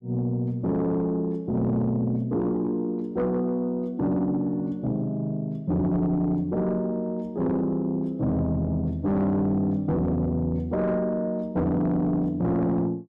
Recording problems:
distortion; soft clipping, signal-to-distortion ratio 11 dB

